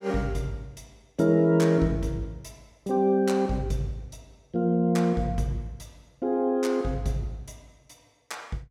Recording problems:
none

